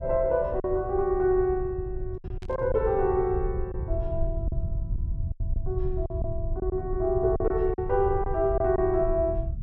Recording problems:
rumble; below 88 Hz, SNR 7 dB
lost packets; 6% of the sound replaced, filled with silence
static burst; at 2.5 s; peak -18 dB vs average level

